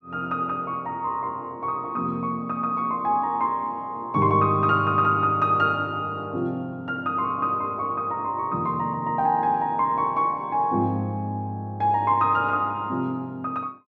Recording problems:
none

